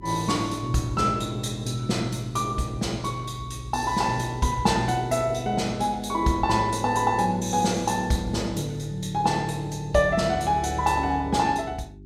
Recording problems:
mains hum; 50 Hz, harmonics up to 400 Hz, SNR 19 dB

